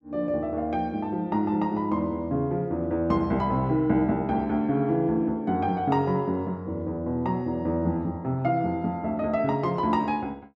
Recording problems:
none

